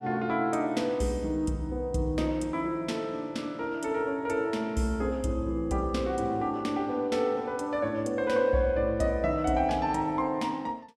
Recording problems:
none

